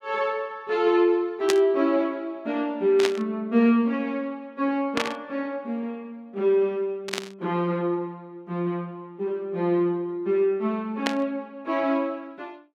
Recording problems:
burst of static; 5 times, first at 1.5 s; peak +3 dB vs average level

